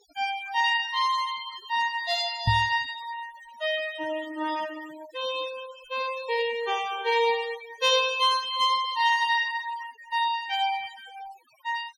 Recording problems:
denoising artefacts; signal-to-artefact ratio 17 dB
microphone bump; at 2.5 s; peak +5 dB vs average level

